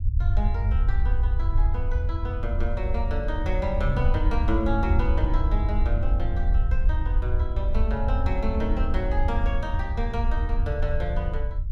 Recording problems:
rumble; below 72 Hz, SNR -5 dB

